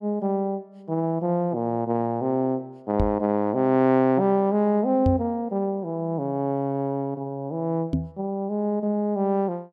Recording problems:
microphone bump; at 3 s, at 5 s and at 8 s; peak +4 dB vs average level

